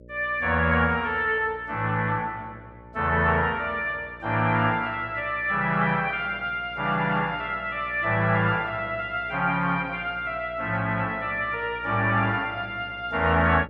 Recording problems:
hum; 60 Hz, harmonics up to 600 Hz, SNR 22 dB

